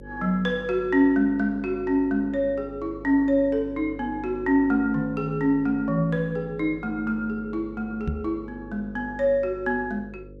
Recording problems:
hum; 50 Hz, harmonics up to 550 Hz, SNR 18 dB
knock on the microphone; at 8 s; peak 0 dB vs average level

